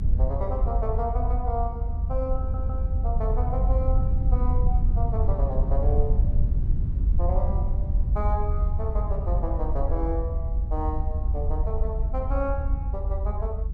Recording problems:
rumble; below 74 Hz, SNR -7 dB
audio stuttering; at 2.5 s

